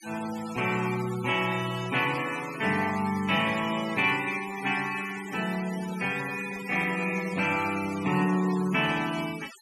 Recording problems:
denoising artefacts; signal-to-artefact ratio 13 dB

